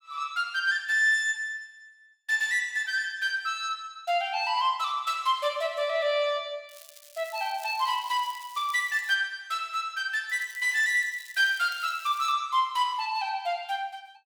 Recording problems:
crackling; from 6.5 to 9 s and from 10 to 12 s; loose cable, SNR 21 dB

